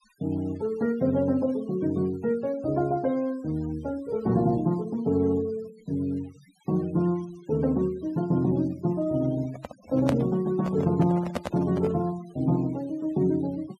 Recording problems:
denoising artefacts; signal-to-artefact ratio 24 dB
handling noise; from 9.5 to 12 s; peak +2 dB vs average level

